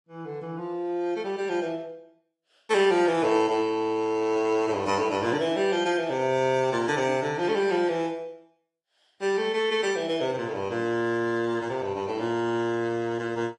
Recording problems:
codec artefacts; AAC, then AAC, log-spectral distance 2 dB

